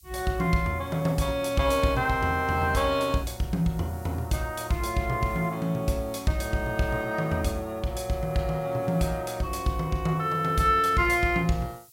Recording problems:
background hiss; SNR 25 dB

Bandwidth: 16 kHz